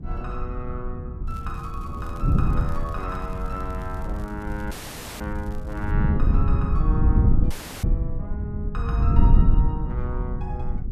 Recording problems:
wind noise; below 100 Hz, SNR -9 dB
crackling; from 1.5 to 6 s; loose cable, SNR 20 dB
audio cutting out; at 4.5 s and at 7.5 s

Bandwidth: 14 kHz